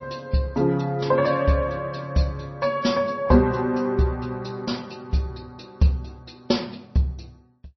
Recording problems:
lossy codec; MP3, then MP3, log-spectral distance 3 dB, nothing above 5.8 kHz

